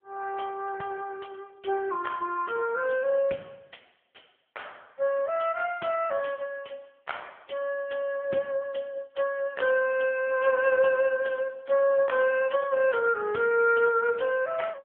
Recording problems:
phone line; 240 Hz to 3 kHz, AMR-NB

